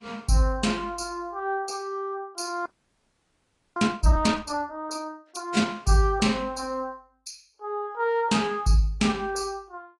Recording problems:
lossy compression; AAC, log-spectral distance 3 dB, nothing above 10.7 kHz
frozen audio; at 2.5 s for 1 s

